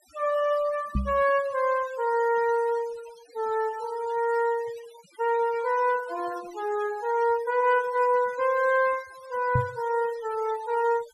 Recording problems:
denoising artefacts; signal-to-artefact ratio 20 dB
knock on the microphone; at 1 s and at 9.5 s; peak +4 dB vs average level

